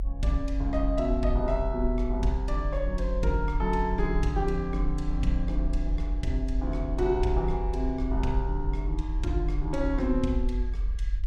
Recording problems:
rumble; below 46 Hz, strongest tone 44 Hz, SNR 1 dB

